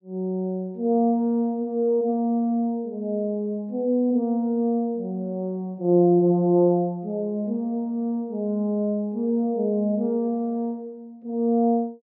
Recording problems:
treble cut off; nothing above 7.2 kHz

